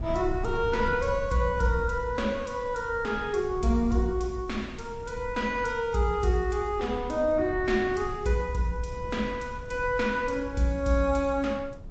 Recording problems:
lossy codec; G.722, then MP3, log-spectral distance 2 dB, nothing above 7.6 kHz
wind on the microphone; below 110 Hz, SNR 13 dB

